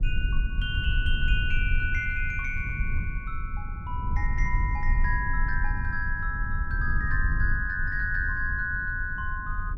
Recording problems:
rumble; below 68 Hz, SNR 0 dB

